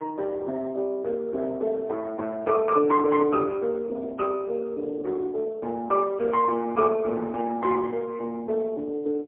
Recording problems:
phone line; 260 Hz to 2.1 kHz, AMR-NB, then MP3

